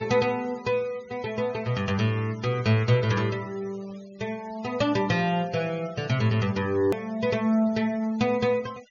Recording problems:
low-pass filter; nothing above 6.7 kHz
noise reduction artefacts; signal-to-artefact ratio 22 dB
edit click; at 7 s

